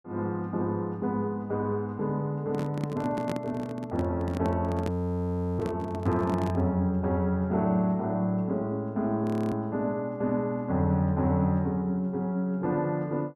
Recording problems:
microphone handling noise; from 2.5 to 6.5 s; peak -1 dB vs average level
audio freezing; at 5 s for 0.5 s and at 9 s

